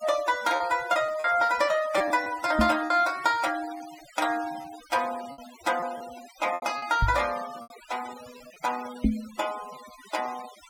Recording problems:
noise reduction artefacts; signal-to-artefact ratio 16 dB
packet loss; 6% of the sound replaced, filled with repeated pitch periods
microphone thump; at 2.5 s, at 7 s and at 9 s; peak +7 dB vs average level

